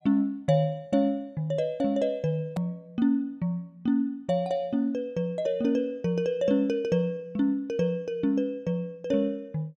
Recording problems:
click at an edit; at 2.5 s

